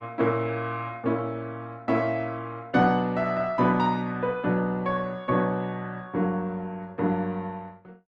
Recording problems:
lossy compression; Opus, log-spectral distance 2 dB

